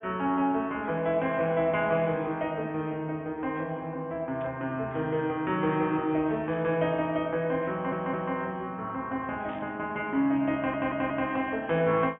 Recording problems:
treble missing; nothing above 3.4 kHz
static burst; at 4.5 s, at 6.5 s and at 9.5 s; peak -16 dB vs average level
audio stuttering; at 7.5 s and at 11 s

